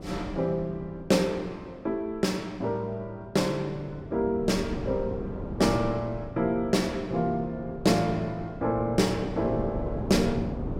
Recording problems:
wind noise; below 370 Hz, SNR 9 dB

